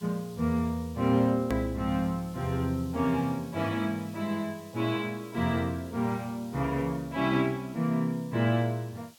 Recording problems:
hiss; SNR 24 dB
click at an edit; at 1.5 s

